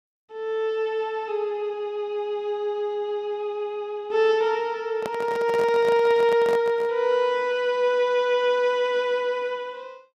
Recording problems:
handling noise; from 5 to 7 s; peak -5 dB vs average level

